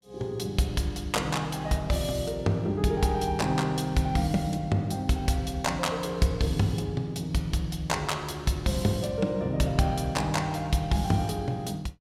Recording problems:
none

